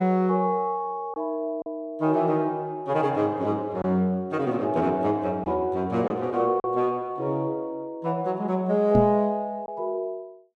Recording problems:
lost packets; 1.7% of the sound replaced, filled with silence
microphone bump; at 9 s; peak +5 dB vs average level

